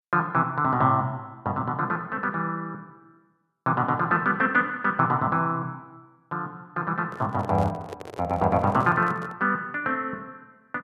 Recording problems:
microphone handling noise; from 7 to 9.5 s; peak -8 dB vs average level

